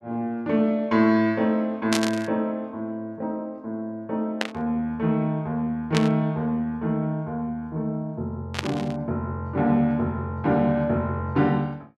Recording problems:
burst of static; 4 times, first at 2 s; peak +4 dB vs average level

